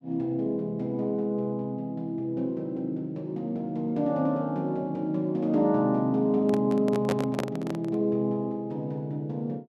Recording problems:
microphone handling noise; from 6.5 to 8 s; peak +2 dB vs average level

